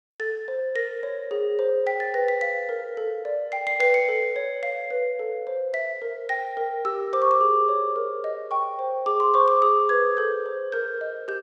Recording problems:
none

